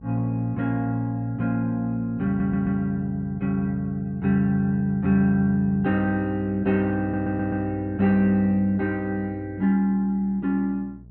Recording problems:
electrical hum; 60 Hz, harmonics up to 420 Hz, SNR 22 dB
audio stuttering; at 2.5 s and at 7 s

